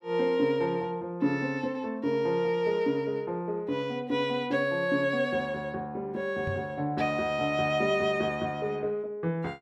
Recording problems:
knock on the microphone; at 6.5 s; peak -3 dB vs average level

